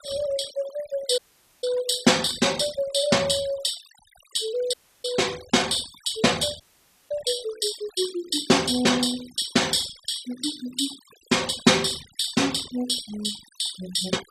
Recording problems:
denoising artefacts; signal-to-artefact ratio 17 dB
dropout; at 1 s, at 4.5 s and at 6.5 s for 0.5 s

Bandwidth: 14.5 kHz